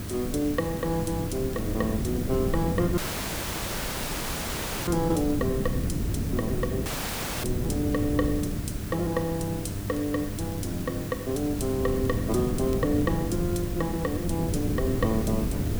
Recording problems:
hum; 50 Hz, harmonics up to 1 kHz, SNR 10 dB
background hiss; SNR 12 dB
wind on the microphone; below 240 Hz, SNR 3 dB
crackle; vinyl, SNR 29 dB
dropout; at 3 s for 2 s and at 7 s for 0.5 s

